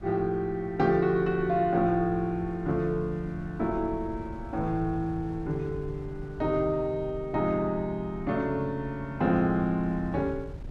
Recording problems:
wind on the microphone; below 130 Hz, SNR 15 dB

